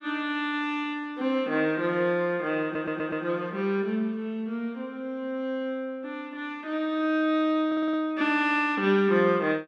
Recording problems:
stutter; at 2.5 s and at 7.5 s

